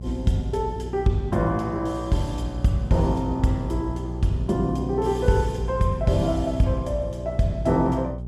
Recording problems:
mains hum; 60 Hz, harmonics up to 600 Hz, SNR 9 dB

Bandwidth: 14.5 kHz